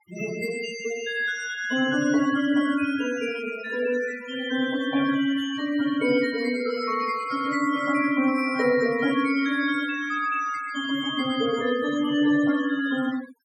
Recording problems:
noise reduction artefacts; signal-to-artefact ratio 12 dB

